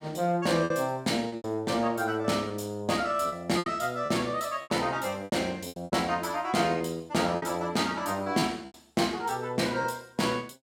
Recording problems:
lost packets; 9% of the sound replaced, filled with repeated pitch periods

